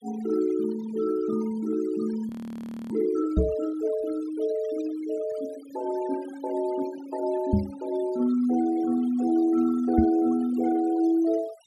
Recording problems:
denoising artefacts; signal-to-artefact ratio 18 dB
frozen audio; at 2.5 s for 0.5 s
microphone thump; at 3.5 s, at 7.5 s and at 10 s; peak +8 dB vs average level

